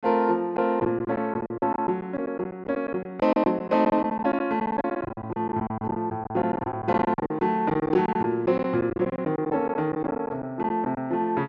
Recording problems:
packet loss; 14% of the sound replaced, filled with silence

